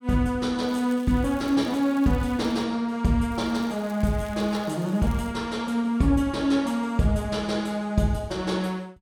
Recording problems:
crackle; from 0.5 to 2.5 s and from 3.5 to 5.5 s; loose cable, SNR 26 dB

